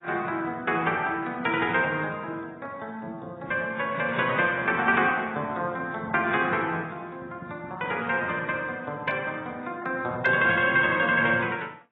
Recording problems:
lossy codec; AAC, then AAC, log-spectral distance 2 dB, nothing above 3.4 kHz

